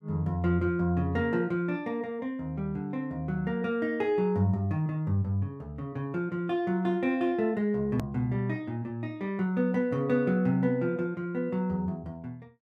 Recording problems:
hard cut with a click; at 8 s

